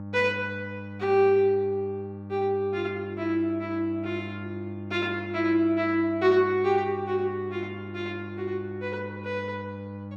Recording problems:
mains hum; 50 Hz, harmonics up to 1.1 kHz, SNR 12 dB

